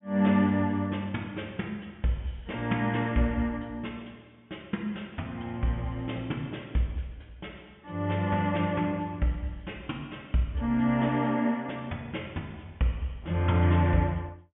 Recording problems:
low-pass filter; nothing above 3.4 kHz

